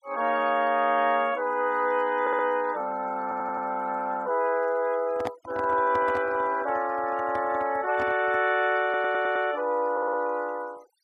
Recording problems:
denoising artefacts; signal-to-artefact ratio 25 dB
stutter; 4 times, first at 2 s
handling noise; from 5 to 8.5 s; peak -2 dB vs average level

